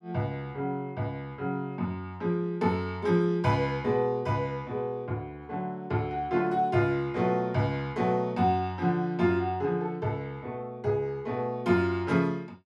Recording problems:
none

